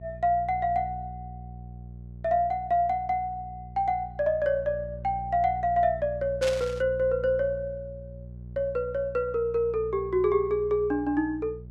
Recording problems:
hum; 60 Hz, harmonics up to 420 Hz, SNR 15 dB
static burst; at 6.5 s; peak -2 dB vs average level

